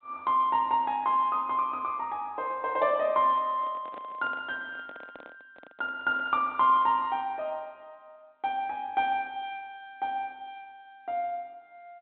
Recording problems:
telephone audio; 150 Hz to 3.8 kHz, G.726
microphone handling noise; from 3.5 to 7 s; peak -13 dB vs average level

